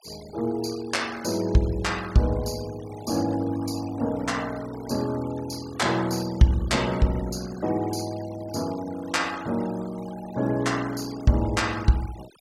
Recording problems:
denoising artefacts; signal-to-artefact ratio 19 dB

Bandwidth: 16.5 kHz